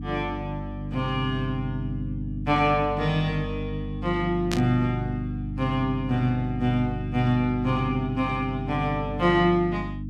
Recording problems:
hum; 50 Hz, harmonics up to 300 Hz, SNR 7 dB
burst of static; at 4.5 s; peak 0 dB vs average level

